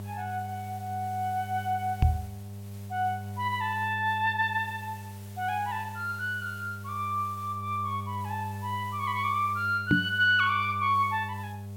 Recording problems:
electrical hum; 50 Hz, harmonics up to 700 Hz, SNR 11 dB
hiss; slope -1 dB per octave, SNR 23 dB
knock on the microphone; at 2 s and at 10 s; peak +9 dB vs average level

